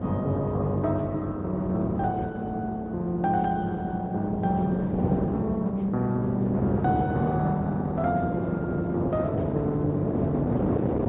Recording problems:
low-pass filter; nothing above 3.6 kHz
codec artefacts; Opus, log-spectral distance 2 dB
wind on the microphone; below 450 Hz, SNR 3 dB

